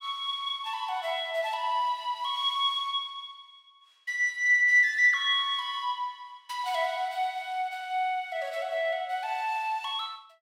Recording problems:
none

